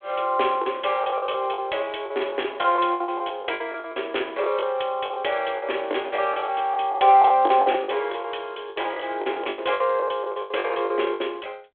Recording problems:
telephone audio; 300 Hz to 3.4 kHz, G.726
lost packets; 17% of the sound replaced, filled with the last packet
crackle; from 6 to 7 s; loose cable, SNR 29 dB

